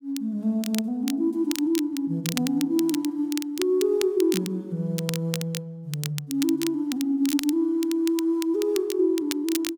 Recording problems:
crackle; vinyl, SNR 10 dB

